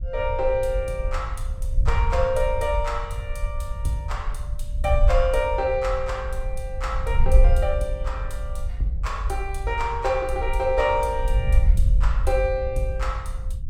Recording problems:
wind on the microphone; below 60 Hz, SNR 1 dB

